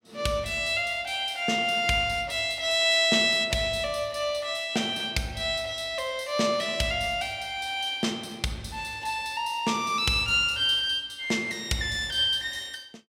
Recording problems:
none

